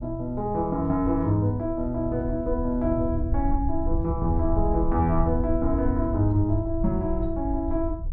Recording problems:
rumble; below 76 Hz, SNR 6 dB

